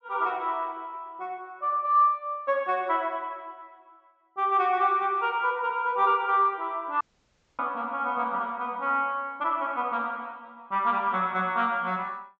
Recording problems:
treble cut off; nothing above 8 kHz
audio cutting out; at 7 s for 0.5 s

